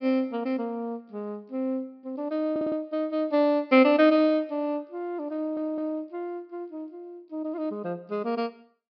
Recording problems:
treble missing; nothing above 5.5 kHz
stutter; at 2.5 s and at 5.5 s

